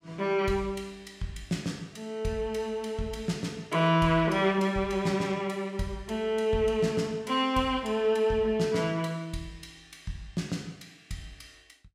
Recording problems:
none

